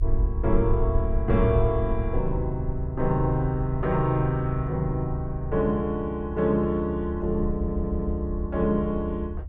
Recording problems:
low-frequency rumble; below 72 Hz, SNR 5 dB
stutter; at 7.5 s

